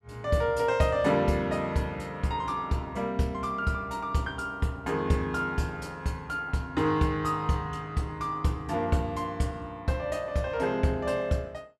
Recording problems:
none

